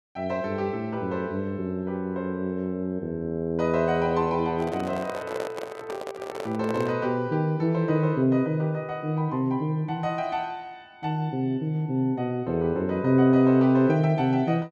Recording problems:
microphone handling noise; from 4.5 to 7 s; peak -3 dB vs average level

